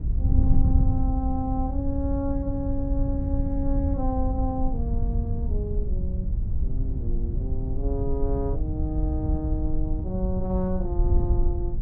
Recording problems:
wind on the microphone; below 82 Hz, SNR -4 dB

